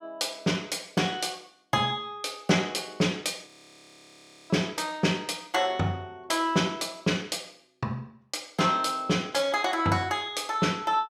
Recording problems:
audio freezing; at 3.5 s for 1 s

